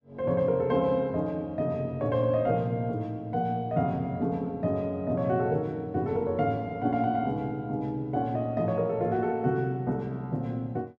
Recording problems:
none

